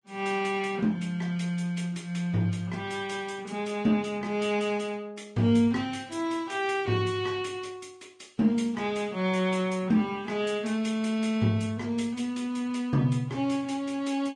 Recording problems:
lossy codec; Vorbis, log-spectral distance 2 dB, nothing above 10.1 kHz

